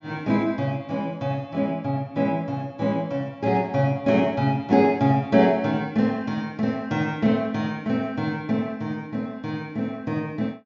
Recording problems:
treble missing; nothing above 7.1 kHz

